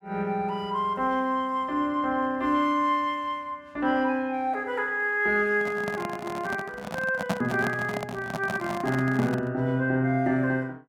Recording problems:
microphone handling noise; from 5.5 to 9.5 s; peak +3 dB vs average level

